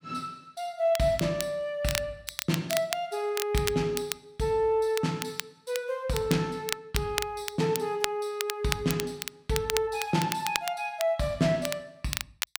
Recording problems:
crackle; vinyl, SNR 6 dB

